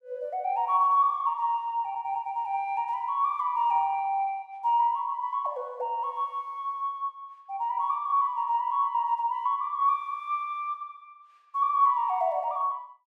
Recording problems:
none

